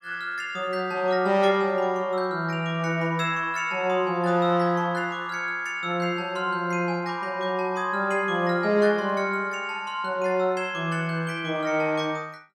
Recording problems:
none

